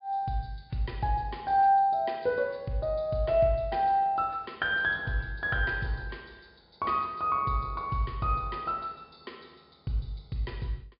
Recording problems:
treble missing; nothing above 5.1 kHz

